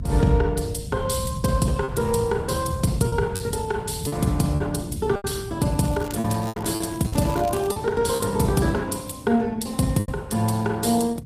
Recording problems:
lossy codec; Opus, log-spectral distance 4 dB, nothing above 15.1 kHz
rumble; below 150 Hz, SNR 8 dB
lost packets; 6% of the sound replaced, filled with repeated pitch periods
crackling; from 6 to 7.5 s; loose cable, SNR 18 dB

